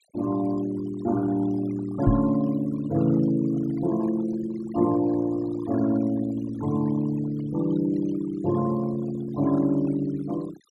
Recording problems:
denoising artefacts; signal-to-artefact ratio 18 dB
microphone bump; at 2 s; peak +6 dB vs average level

